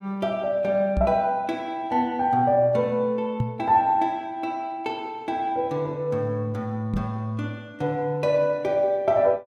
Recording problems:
microphone thump; at 1 s, at 3.5 s and at 7 s; peak +3 dB vs average level

